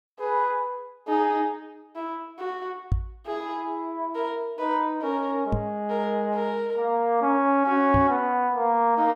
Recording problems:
microphone thump; at 3 s, at 5.5 s and at 8 s; peak +4 dB vs average level

